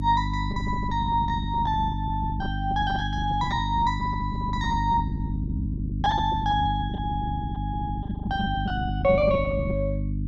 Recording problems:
hum; 50 Hz, harmonics up to 350 Hz, SNR 3 dB
lost packets; 15% of the sound replaced, filled with repeated pitch periods

